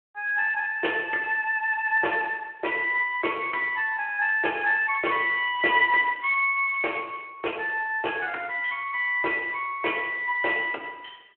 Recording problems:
phone line; 280 Hz to 3.1 kHz, Speex
crackling; from 4.5 to 7.5 s; loose cable, SNR 27 dB

